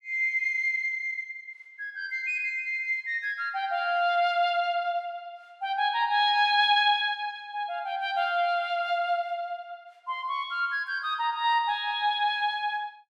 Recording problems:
none

